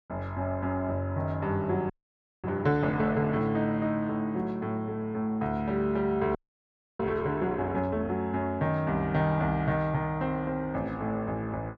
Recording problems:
frozen audio; at 2 s for 0.5 s and at 6.5 s for 0.5 s

